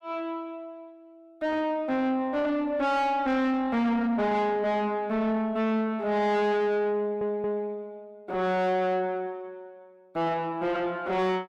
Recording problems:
distortion; soft clipping, signal-to-distortion ratio 7 dB
stutter; at 7 s

